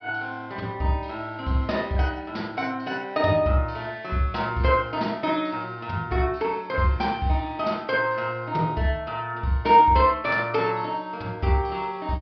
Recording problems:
treble missing; nothing above 5.5 kHz

